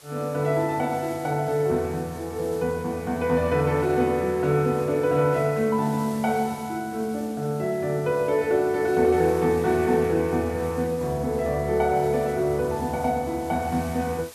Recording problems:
hiss; slope -1 dB per octave, SNR 21 dB

